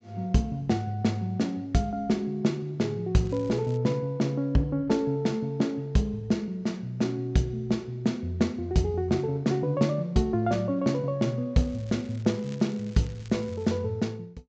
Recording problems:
low-pass filter; nothing above 8 kHz
crackle; at 3 s and from 12 to 14 s; loose cable, SNR 26 dB

